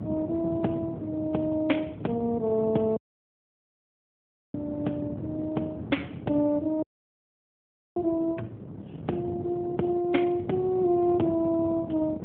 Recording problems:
phone line; 190 Hz to 3.4 kHz, AMR-NB
wind on the microphone; below 350 Hz, SNR 9 dB
dropout; at 3 s for 1.5 s and at 7 s for 1 s

